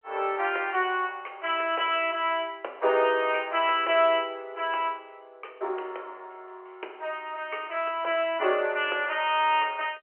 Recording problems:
telephone audio; 340 Hz to 3.2 kHz, G.711

